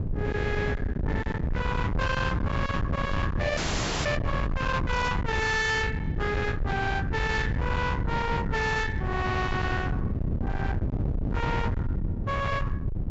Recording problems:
treble missing; nothing above 7.4 kHz
distorted audio; hard clipping, uneven, signal-to-distortion ratio 8 dB
wind noise; below 360 Hz, SNR 1 dB
frozen audio; at 3.5 s

